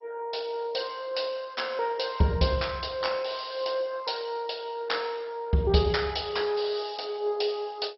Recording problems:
lossy compression; MP2, log-spectral distance 7 dB, nothing above 5.5 kHz

